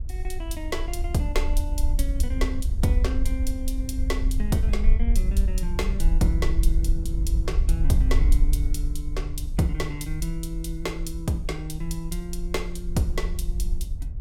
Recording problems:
wind noise; below 54 Hz, SNR -3 dB

